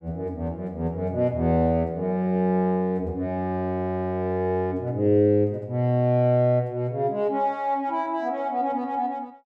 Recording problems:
none

